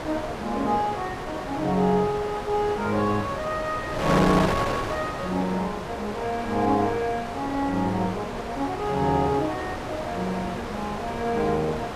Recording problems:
wind noise; below 1.4 kHz, SNR 5 dB

